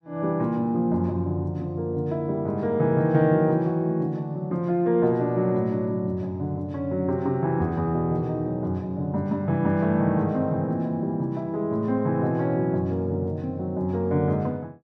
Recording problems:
none

